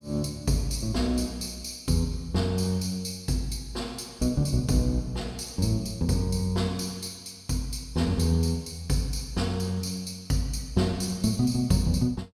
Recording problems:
none

